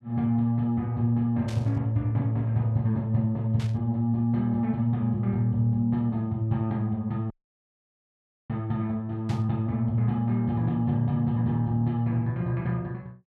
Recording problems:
burst of static; at 1.5 s, at 3.5 s and at 9.5 s; peak -12 dB vs average level
audio cutting out; at 7.5 s for 1 s

